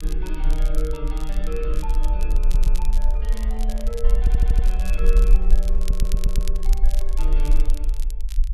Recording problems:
rumble; below 40 Hz, strongest tone 24 Hz, SNR -11 dB
crackling; vinyl, SNR 8 dB
audio stuttering; at 2.5 s, at 4 s and at 6 s
handling noise; from 2.5 to 8 s; peak -10 dB vs average level

